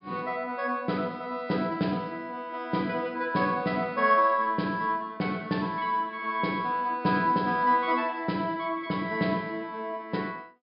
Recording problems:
treble missing; nothing above 5.5 kHz

